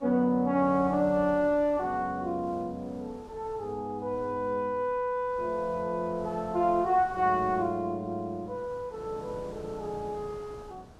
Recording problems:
wind on the microphone; below 770 Hz, SNR 20 dB

